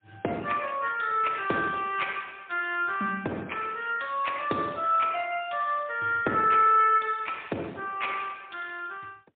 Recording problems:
phone line; 170 Hz to 3.5 kHz, AMR-NB, then MP3

